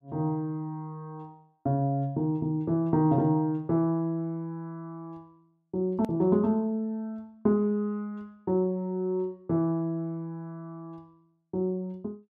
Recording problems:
click at an edit; at 6 s

